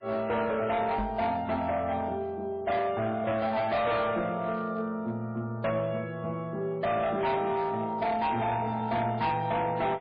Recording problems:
codec artefacts; MP3, log-spectral distance 2 dB, nothing above 4.1 kHz
distortion; hard clipping, signal-to-distortion ratio 10 dB
microphone thump; at 1 s; peak -1 dB vs average level

